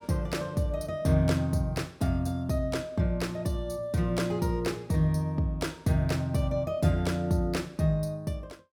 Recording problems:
none

